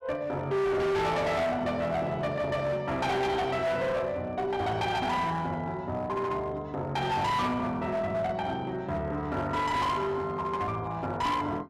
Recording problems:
distortion; hard clipping, uneven, signal-to-distortion ratio 7 dB

